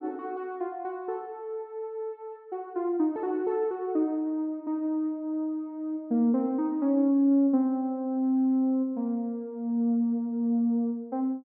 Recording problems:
treble missing; nothing above 5.5 kHz

